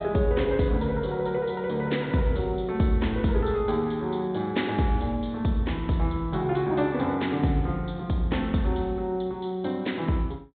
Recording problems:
low-pass filter; nothing above 4 kHz

